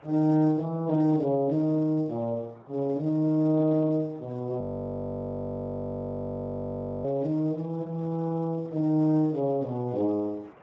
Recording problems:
lossy compression; MP3, then Speex, log-spectral distance 4 dB
background hiss; SNR 26 dB
audio freezing; at 4.5 s for 2.5 s

